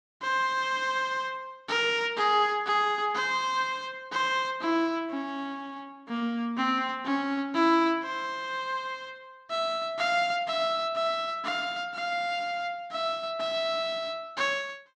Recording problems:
none

